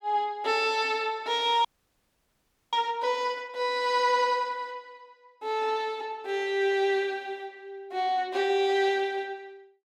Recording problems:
frozen audio; at 1.5 s for 1 s

